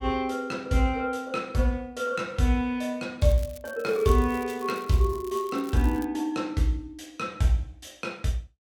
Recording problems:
crackle; from 3 to 6 s; loose cable, SNR 21 dB

